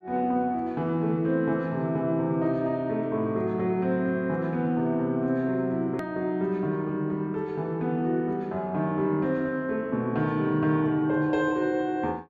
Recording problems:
edit click; at 6 s

